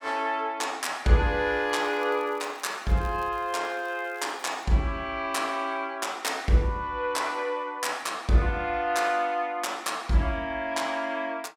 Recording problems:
crackling; from 1.5 to 4.5 s; loose cable, SNR 26 dB

